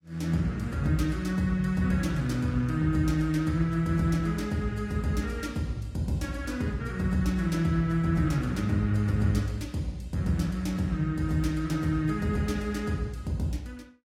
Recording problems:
lossy codec; AAC, log-spectral distance 2 dB, nothing above 16.5 kHz

